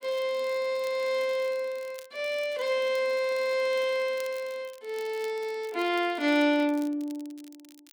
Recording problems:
crackle; vinyl, SNR 24 dB

